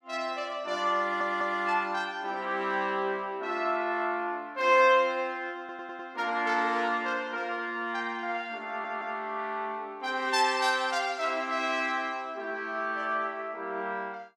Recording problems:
stutter; at 1 s, at 5.5 s and at 8.5 s

